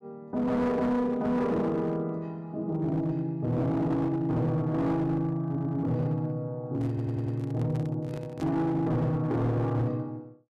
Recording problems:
distortion; hard clipping, signal-to-distortion ratio 11 dB
stutter; at 5.5 s and at 7 s
microphone handling noise; from 7 to 8.5 s; peak -6 dB vs average level

